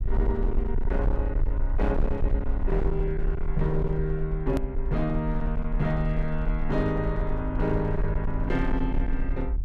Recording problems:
distortion; hard clipping, uneven, signal-to-distortion ratio 10 dB
rumble; below 50 Hz, SNR 1 dB
edit click; at 4.5 s

